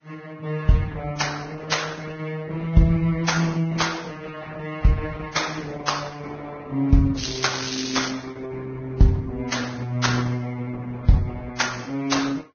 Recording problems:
lossy compression; Opus, then Vorbis, log-spectral distance 6 dB, nothing above 6.5 kHz
crackling; at 7 s; loose cable, SNR 5 dB

